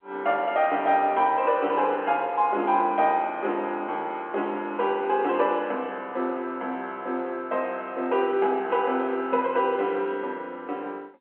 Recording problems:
phone line; 220 Hz to 3.3 kHz, G.711

